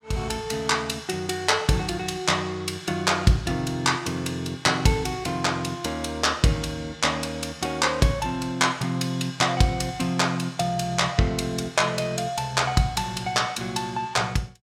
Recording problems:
none

